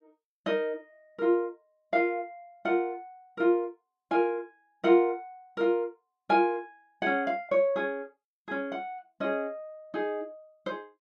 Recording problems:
none

